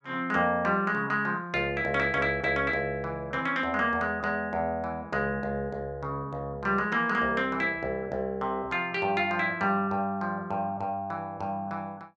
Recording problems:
none

